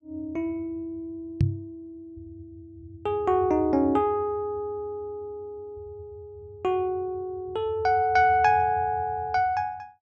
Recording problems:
knock on the microphone; at 1.5 s; peak +6 dB vs average level

